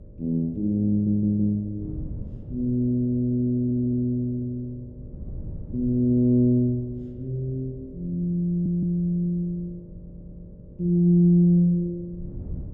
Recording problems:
mains hum; 50 Hz, harmonics up to 600 Hz, SNR 26 dB
wind on the microphone; below 160 Hz, SNR 19 dB
stutter; 4 times, first at 1 s

